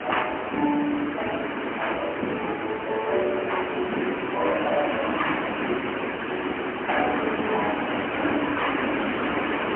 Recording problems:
telephone audio; 220 Hz to 3 kHz, AMR-NB, then MP3
hiss; SNR 1 dB

